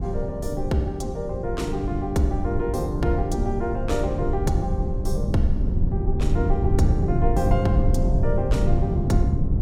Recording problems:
low-frequency rumble; below 110 Hz, SNR -1 dB

